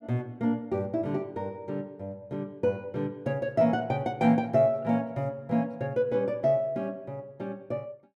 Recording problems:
none

